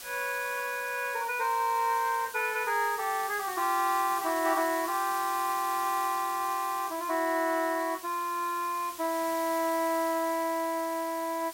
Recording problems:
background hiss; slope +1 dB per octave, SNR 12 dB

